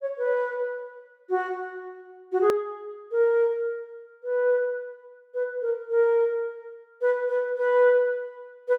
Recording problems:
hard cut with a click; at 2.5 s

